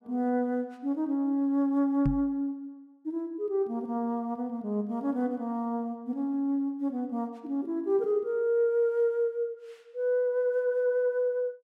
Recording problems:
knock on the microphone; at 2 s; peak +3 dB vs average level

